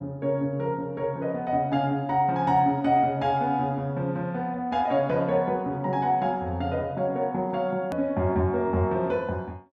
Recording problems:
click at an edit; at 8 s

